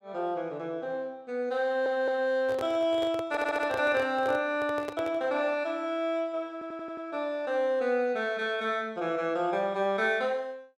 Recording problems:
stutter; at 1.5 s, at 3.5 s and at 6.5 s
microphone handling noise; from 2.5 to 5 s; peak -4 dB vs average level

